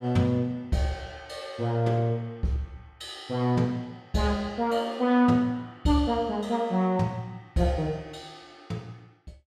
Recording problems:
none

